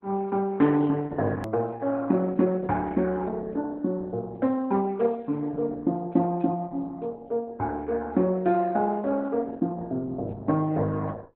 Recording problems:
lossy compression; Opus, log-spectral distance 2 dB, nothing above 13.1 kHz
click at an edit; at 1.5 s

